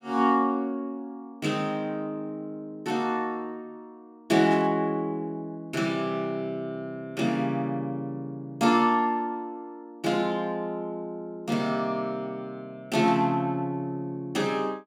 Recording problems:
burst of static; at 4.5 s and at 13 s; peak -10 dB vs average level

